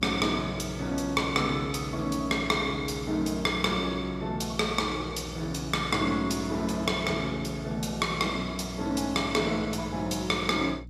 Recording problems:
hum; 60 Hz, harmonics up to 300 Hz, SNR 15 dB

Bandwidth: 15 kHz